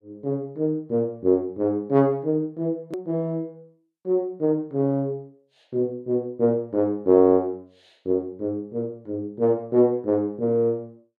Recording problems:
hard cut with a click; at 3 s

